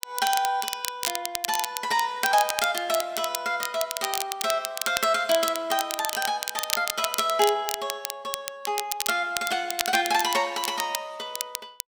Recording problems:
crackle; vinyl, SNR 5 dB

